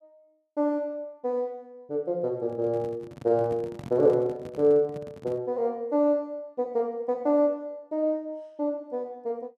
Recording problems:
handling noise; from 2.5 to 5.5 s; peak -8 dB vs average level

